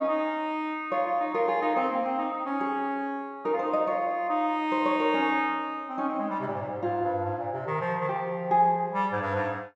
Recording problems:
none

